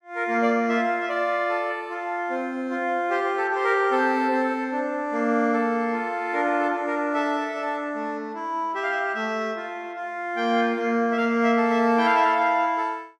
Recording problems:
none

